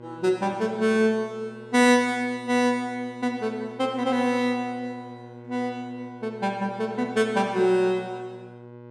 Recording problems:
hum; 60 Hz, harmonics up to 1.6 kHz, SNR 20 dB

